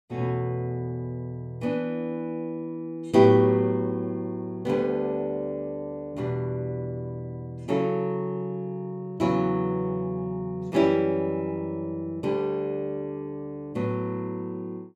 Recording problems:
none

